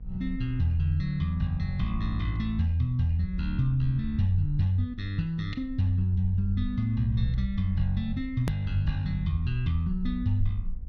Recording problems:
hum; 50 Hz, harmonics up to 750 Hz, SNR 26 dB
rumble; below 54 Hz, SNR 12 dB
edit click; at 8.5 s

